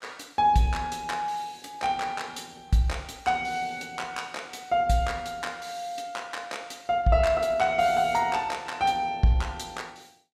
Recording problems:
none

